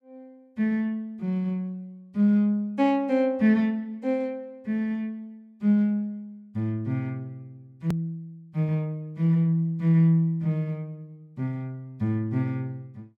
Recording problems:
click at an edit; at 8 s

